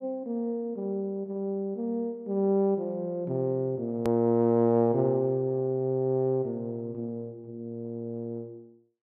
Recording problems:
hard cut with a click; at 4 s

